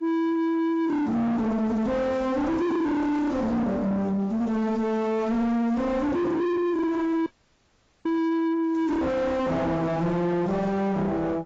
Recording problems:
codec artefacts; AAC, log-spectral distance 2 dB
distortion; soft clipping, signal-to-distortion ratio 5 dB
dropout; at 7.5 s for 1 s

